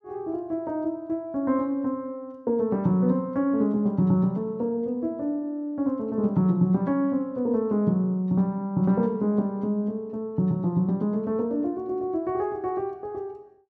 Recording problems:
none

